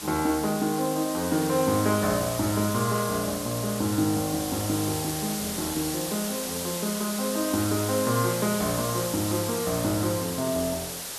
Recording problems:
background hiss; slope -1 dB per octave, SNR 5 dB
crackle; from 3 to 9 s; loose cable, SNR 27 dB

